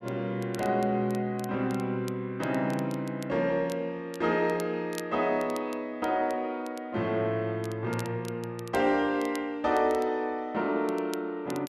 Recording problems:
crackling; vinyl, SNR 21 dB

